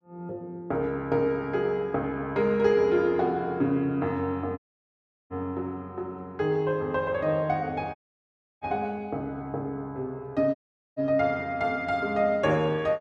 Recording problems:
dropout; at 4.5 s for 0.5 s, at 8 s for 0.5 s and at 11 s

